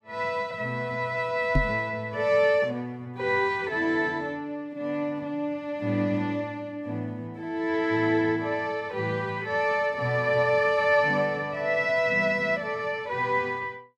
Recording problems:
microphone bump; at 1.5 s; peak +5 dB vs average level

